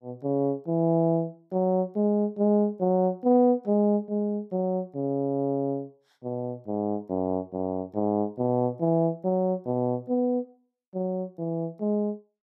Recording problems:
none

